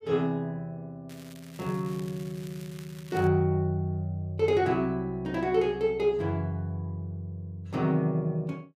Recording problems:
crackle; from 1 to 3.5 s; loose cable, SNR 21 dB

